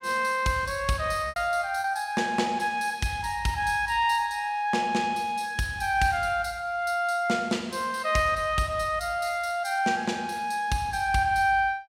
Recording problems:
packet loss; 1% of the sound replaced, filled with repeated pitch periods

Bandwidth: 16 kHz